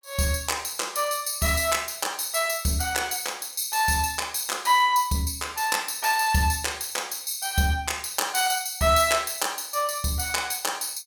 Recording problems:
none

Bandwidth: 17.5 kHz